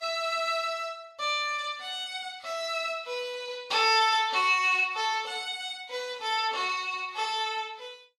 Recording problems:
codec artefacts; Vorbis, log-spectral distance 3 dB, nothing above 12.7 kHz

